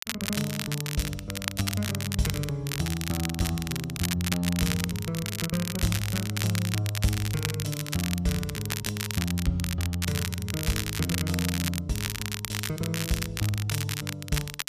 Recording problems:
crackling; vinyl, SNR 3 dB

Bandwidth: 14.5 kHz